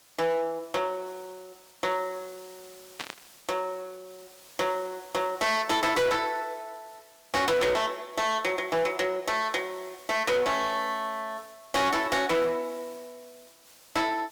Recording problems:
distorted audio; hard clipping, uneven, signal-to-distortion ratio 7 dB
background hiss; slope 0 dB per octave, SNR 23 dB
static burst; at 3 s; peak -2 dB vs average level

